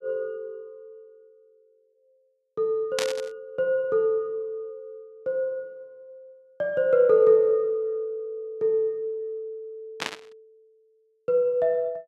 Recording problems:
burst of static; at 3 s and at 10 s; peak +1 dB vs average level

